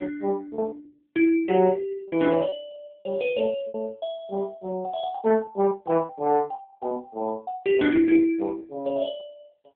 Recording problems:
telephone audio; 190 Hz to 3.4 kHz, AMR-NB
lost packets; 8% of the sound replaced, filled with repeated pitch periods

